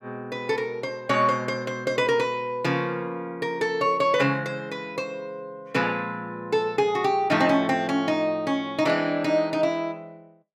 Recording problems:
none

